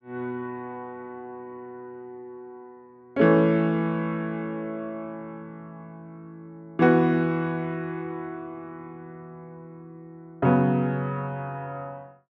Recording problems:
none

